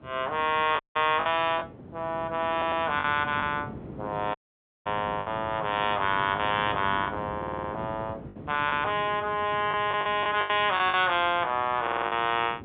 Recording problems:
telephone audio; 220 Hz to 3.6 kHz, G.711
wind noise; below 410 Hz, SNR 15 dB
packet loss; 5% of the sound replaced, filled with the last packet
audio cutting out; at 1 s and at 4.5 s for 0.5 s
stutter; at 2.5 s, at 7.5 s and at 12 s

